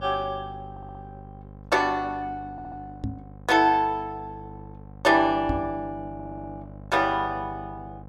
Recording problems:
mains hum; 50 Hz, harmonics up to 1.1 kHz, SNR 18 dB
audio stuttering; at 0.5 s, at 2.5 s and at 6 s
knock on the microphone; at 3 s and at 5.5 s; peak 0 dB vs average level

